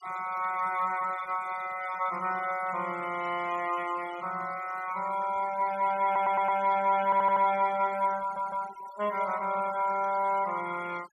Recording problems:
noise reduction artefacts; signal-to-artefact ratio 18 dB
audio stuttering; at 6 s, at 7 s and at 8 s

